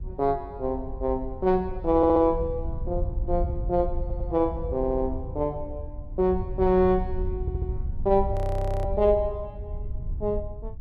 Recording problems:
wind noise; below 80 Hz, SNR 8 dB
stutter; 4 times, first at 2 s
audio freezing; at 8.5 s for 0.5 s

